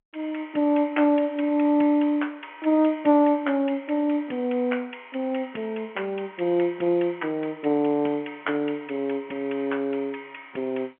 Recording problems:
telephone audio; 220 Hz to 3.2 kHz, G.711

